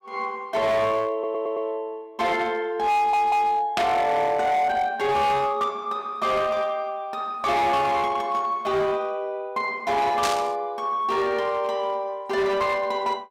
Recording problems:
distortion; hard clipping, signal-to-distortion ratio 11 dB
stutter; at 1 s and at 3 s
burst of static; at 4 s and at 10 s; peak +1 dB vs average level

